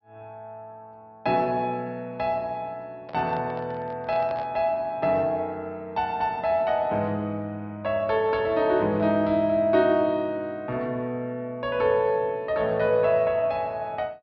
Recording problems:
treble cut off; nothing above 5.5 kHz
handling noise; from 3 to 4.5 s; peak -9 dB vs average level

